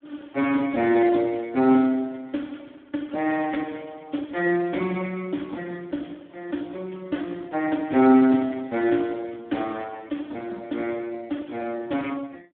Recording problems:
phone line; 220 Hz to 3.4 kHz, Speex

